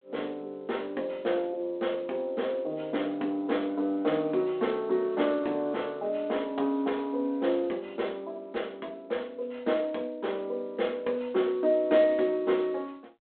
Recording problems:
phone line; 240 Hz to 3.4 kHz, G.726

